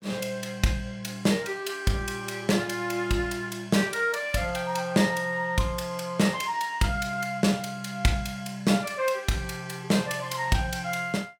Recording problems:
none

